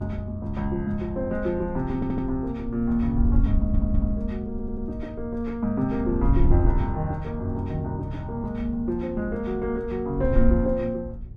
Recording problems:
electrical hum; 60 Hz, harmonics up to 420 Hz, SNR 18 dB
wind noise; below 68 Hz, SNR 3 dB
stutter; at 2 s, at 3.5 s and at 4.5 s

